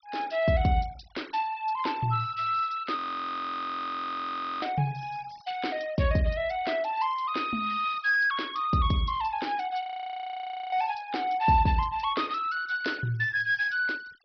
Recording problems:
treble cut off; nothing above 5.5 kHz
noise reduction artefacts; signal-to-artefact ratio 23 dB
audio freezing; at 3 s for 1.5 s and at 10 s for 1 s

